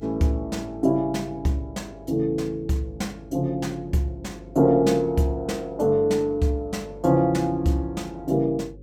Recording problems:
hum; 50 Hz, harmonics up to 550 Hz, SNR 22 dB

